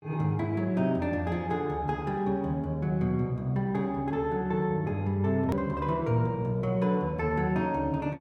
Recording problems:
edit click; at 5.5 s

